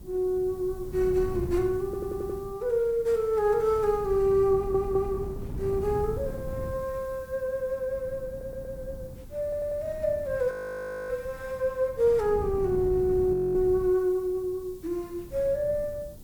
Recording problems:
hiss; slope +5 dB per octave, SNR 28 dB
wind on the microphone; below 180 Hz, SNR 13 dB
audio stuttering; 4 times, first at 2 s
audio freezing; at 11 s for 0.5 s and at 13 s

